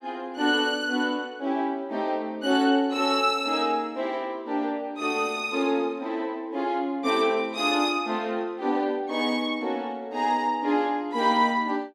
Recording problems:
none

